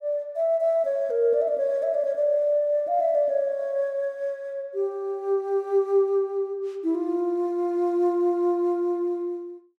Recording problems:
none

